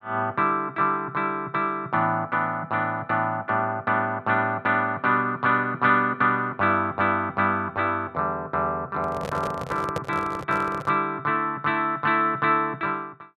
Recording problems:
handling noise; from 9 to 11 s; peak -1 dB vs average level

